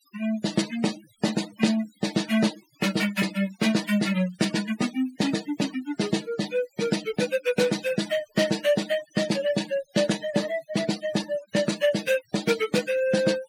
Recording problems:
denoising artefacts; signal-to-artefact ratio 13 dB

